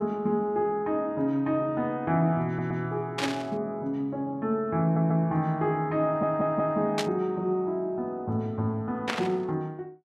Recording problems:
stutter; at 2.5 s, at 5 s and at 6 s
static burst; at 3 s, at 7 s and at 9 s; peak +3 dB vs average level

